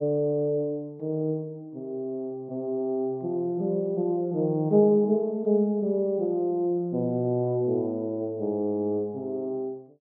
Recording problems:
none

